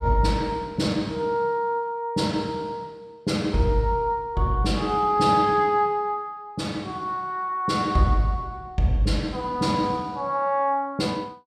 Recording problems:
none

